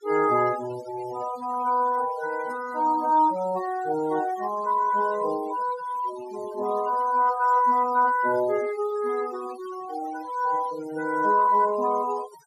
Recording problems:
noise reduction artefacts; signal-to-artefact ratio 20 dB

